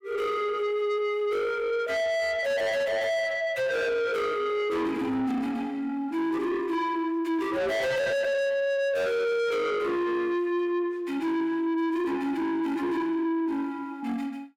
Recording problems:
distortion; soft clipping, signal-to-distortion ratio 6 dB

